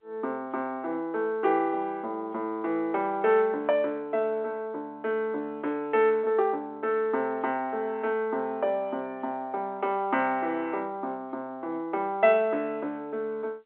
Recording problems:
telephone audio; 260 Hz to 3.6 kHz, G.711

